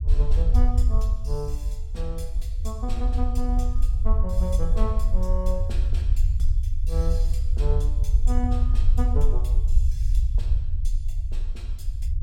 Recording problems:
rumble; below 62 Hz, SNR -9 dB

